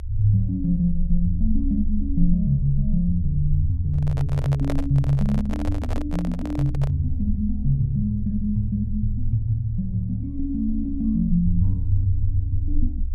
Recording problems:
low-frequency rumble; below 68 Hz, strongest tone 20 Hz, SNR 6 dB
handling noise; from 4 to 7 s; peak -3 dB vs average level

